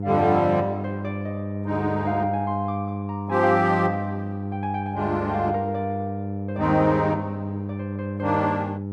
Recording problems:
hum; 50 Hz, harmonics up to 500 Hz, SNR 6 dB

